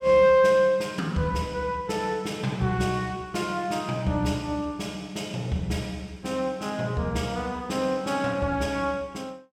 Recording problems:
none

